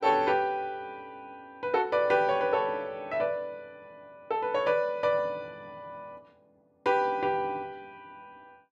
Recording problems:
none

